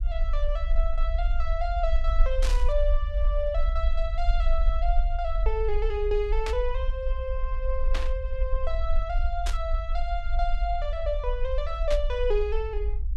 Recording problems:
rumble; below 46 Hz, strongest tone 20 Hz, SNR -2 dB
burst of static; 5 times, first at 2.5 s; peak +1 dB vs average level

